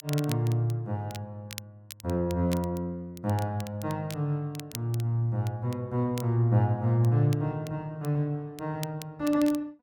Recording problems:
crackling; vinyl, SNR 18 dB

